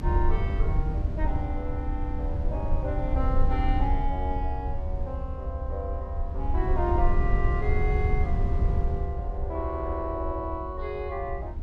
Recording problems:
rumble; below 74 Hz, SNR -4 dB

